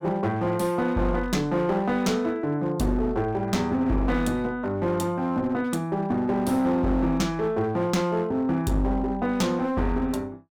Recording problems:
distortion; hard clipping, uneven, signal-to-distortion ratio 11 dB

